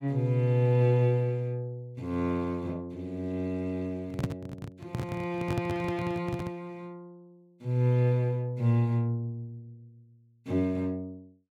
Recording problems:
microphone handling noise; from 4 to 6.5 s; peak +3 dB vs average level

